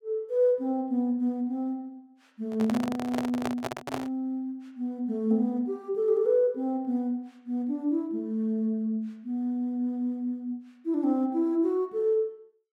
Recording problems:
microphone handling noise; from 2.5 to 4 s; peak +1 dB vs average level

